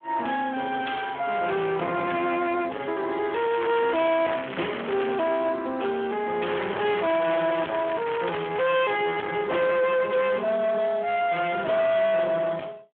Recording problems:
telephone audio; 240 Hz to 3.3 kHz, Speex
distorted audio; soft clipping, signal-to-distortion ratio 7 dB
crackle; from 3.5 to 5 s, at 6.5 s and from 7 to 9 s; loose cable, SNR 10 dB

